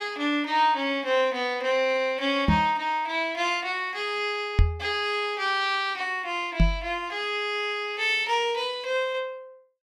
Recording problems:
microphone thump; at 2.5 s, at 4.5 s and at 6.5 s; peak +7 dB vs average level

